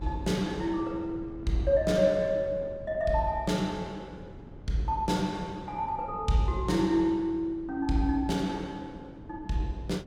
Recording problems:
wind on the microphone; below 280 Hz, SNR 17 dB

